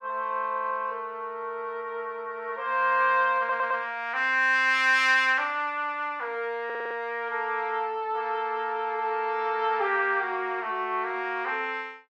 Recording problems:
audio stuttering; at 3.5 s and at 6.5 s

